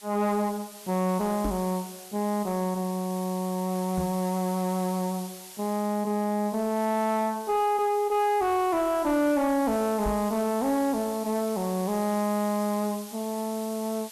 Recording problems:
distorted audio; soft clipping, signal-to-distortion ratio 11 dB
background hiss; slope +2 dB per octave, SNR 16 dB
knock on the microphone; at 1.5 s, at 4 s and at 10 s; peak -1 dB vs average level

